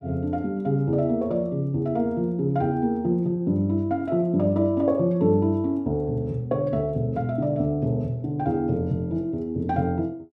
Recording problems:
none

